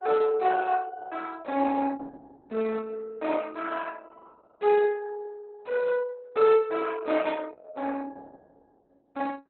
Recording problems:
lossy codec; Opus, log-spectral distance 3 dB, nothing above 4 kHz

